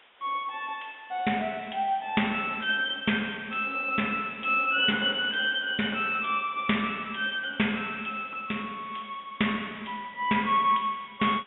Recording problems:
low-pass filter; nothing above 3.6 kHz
hiss; SNR 27 dB

